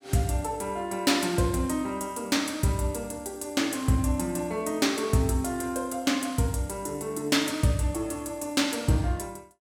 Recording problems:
none

